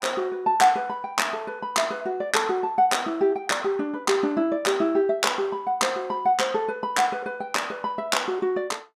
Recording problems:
none

